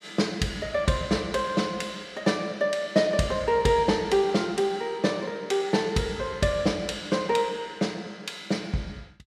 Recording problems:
none

